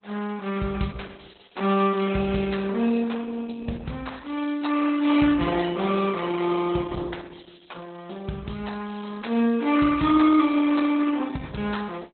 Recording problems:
lossy compression; Opus, log-spectral distance 6 dB, nothing above 4 kHz

